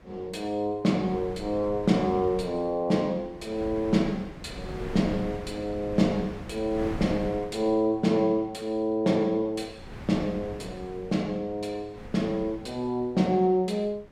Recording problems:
wind on the microphone; below 440 Hz, SNR 14 dB

